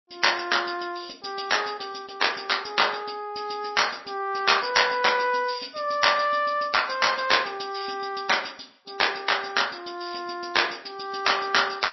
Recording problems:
codec artefacts; MP3, log-spectral distance 10 dB, nothing above 5.7 kHz

